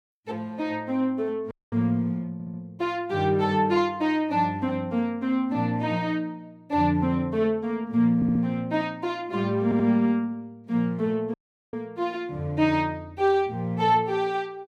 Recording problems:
audio cutting out; at 1.5 s and at 11 s
stutter; at 2.5 s, at 8 s and at 9.5 s

